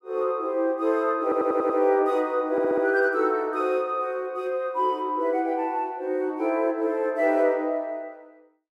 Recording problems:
audio stuttering; at 1 s and at 2.5 s

